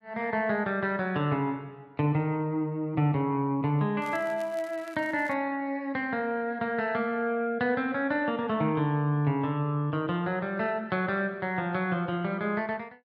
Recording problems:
crackle; from 4 to 5.5 s; loose cable, SNR 24 dB

